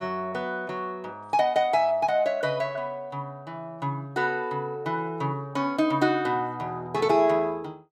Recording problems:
none

